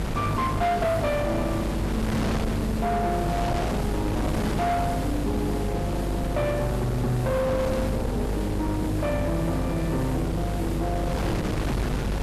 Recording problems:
distortion; soft clipping, signal-to-distortion ratio 11 dB
hum; 50 Hz, harmonics up to 700 Hz, SNR 3 dB
background hiss; SNR 19 dB
wind noise; below 750 Hz, SNR 4 dB

